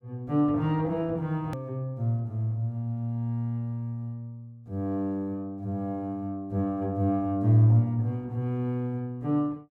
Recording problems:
click at an edit; at 1.5 s

